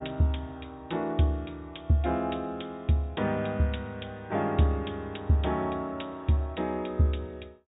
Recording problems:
treble cut off; nothing above 4 kHz

